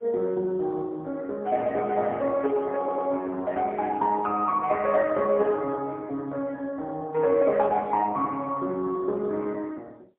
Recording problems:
phone line; 240 Hz to 2.2 kHz, AMR-NB, then MP3
stutter; at 3 s

